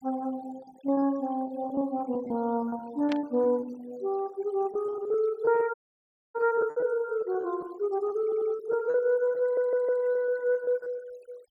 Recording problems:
noise reduction artefacts; signal-to-artefact ratio 24 dB
lost packets; 11% of the sound replaced, filled with repeated pitch periods
static burst; at 3 s; peak -5 dB vs average level
dropout; at 5.5 s for 0.5 s
stutter; at 8 s and at 9.5 s

